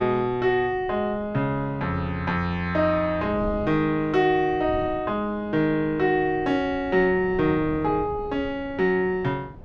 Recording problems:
wind noise; below 280 Hz, SNR 18 dB

